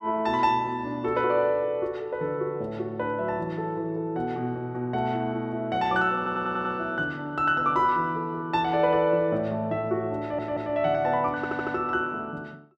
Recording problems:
audio stuttering; at 6 s, at 10 s and at 11 s

